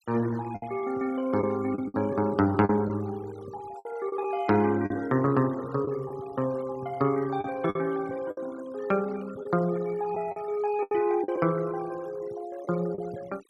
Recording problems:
denoising artefacts; signal-to-artefact ratio 21 dB
lost packets; 6% of the sound replaced, filled with the last packet

